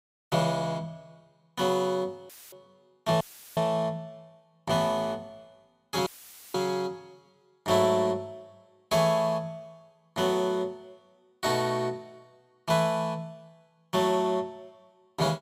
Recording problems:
audio cutting out; at 2.5 s, at 3 s and at 6 s; filled with static

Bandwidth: 15.5 kHz